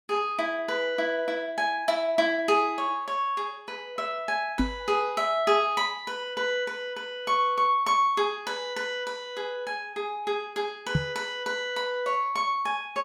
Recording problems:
microphone bump; at 4.5 s and at 11 s; peak +6 dB vs average level

